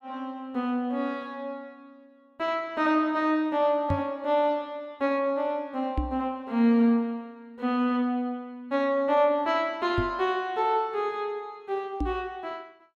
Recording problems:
knock on the microphone; 4 times, first at 4 s; peak +2 dB vs average level

